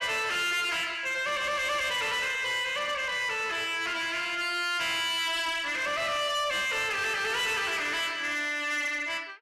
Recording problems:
distorted audio; soft clipping, signal-to-distortion ratio 10 dB

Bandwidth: 14 kHz